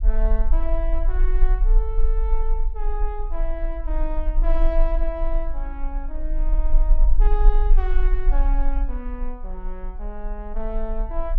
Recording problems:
rumble; below 36 Hz, strongest tone 22 Hz, SNR -9 dB

